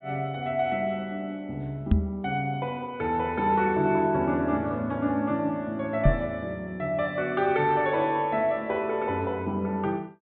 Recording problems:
low-pass filter; nothing above 4 kHz
microphone bump; at 2 s and at 6 s; peak +9 dB vs average level

